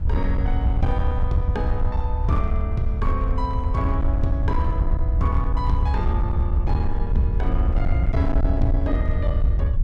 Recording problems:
distorted audio; hard clipping, signal-to-distortion ratio 12 dB
rumble; below 78 Hz, SNR -4 dB
wind on the microphone; below 160 Hz, SNR 17 dB

